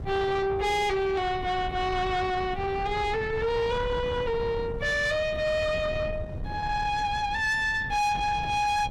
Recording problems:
distorted audio; soft clipping, signal-to-distortion ratio 11 dB
wind on the microphone; below 270 Hz, SNR 10 dB

